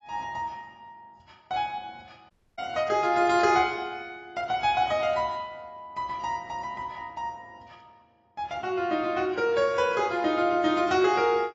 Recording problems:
codec artefacts; AAC, log-spectral distance 2 dB, nothing above 7.1 kHz
dropout; at 2.5 s

